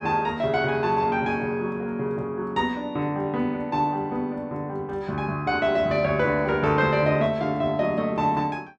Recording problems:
none

